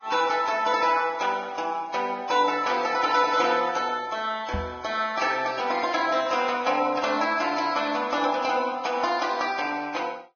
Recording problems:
lossy codec; Vorbis, log-spectral distance 4 dB, nothing above 6.3 kHz
microphone thump; at 4.5 s; peak -3 dB vs average level

